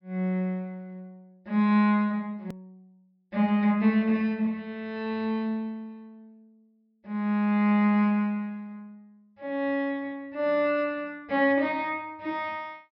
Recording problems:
treble cut off; nothing above 5.5 kHz
hard cut with a click; at 2.5 s

